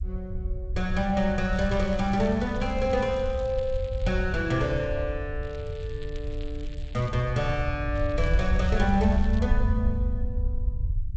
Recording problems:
lossy codec; G.722, log-spectral distance 2 dB, nothing above 7.3 kHz
rumble; below 78 Hz, SNR 3 dB
crackling; from 1.5 to 4 s, from 5.5 to 7 s and from 8 to 9.5 s; loose cable, SNR 23 dB

